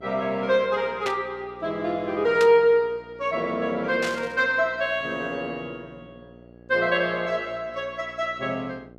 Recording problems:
mains hum; 60 Hz, harmonics up to 1.3 kHz, SNR 25 dB
static burst; at 1 s, at 2.5 s and at 4 s; peak -2 dB vs average level

